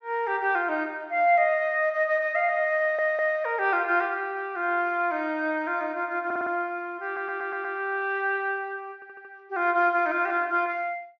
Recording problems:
treble cut off; nothing above 6.2 kHz
audio stuttering; 4 times, first at 3 s

